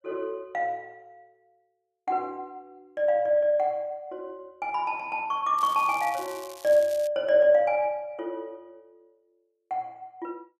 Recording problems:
crackle; from 5.5 to 7 s; loose cable, SNR 19 dB

